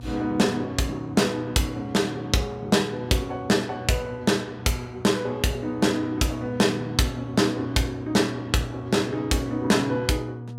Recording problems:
hum; 60 Hz, harmonics up to 960 Hz, SNR 13 dB

